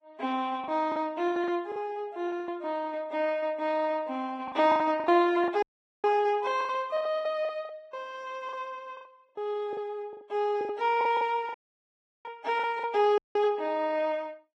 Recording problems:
lossy codec; Vorbis, log-spectral distance 2 dB
packet loss; 13% of the sound replaced, filled with the last packet
dropout; at 5.5 s, at 12 s for 0.5 s and at 13 s

